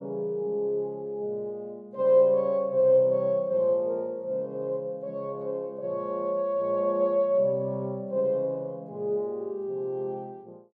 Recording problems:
none

